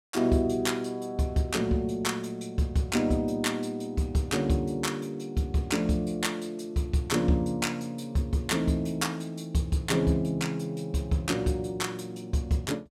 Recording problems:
none

